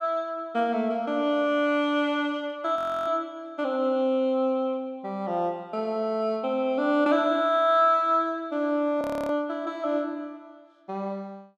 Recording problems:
audio freezing; at 3 s and at 9 s

